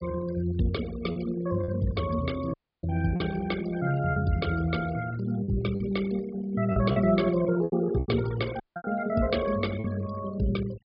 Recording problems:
treble missing; nothing above 5 kHz
denoising artefacts; signal-to-artefact ratio 16 dB
lost packets; 6% of the sound replaced, filled with repeated pitch periods
dropout; at 2.5 s and at 8.5 s

